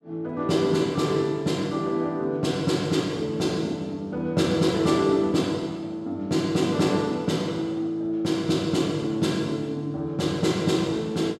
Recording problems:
none

